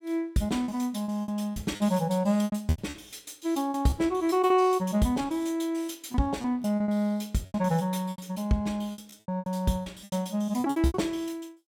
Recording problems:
lost packets; 13% of the sound replaced, filled with repeated pitch periods

